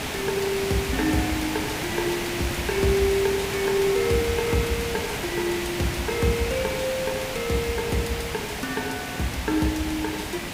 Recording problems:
hiss; SNR 3 dB

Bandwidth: 15.5 kHz